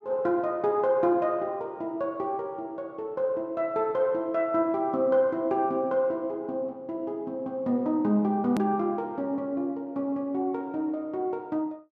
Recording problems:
click at an edit; at 8.5 s

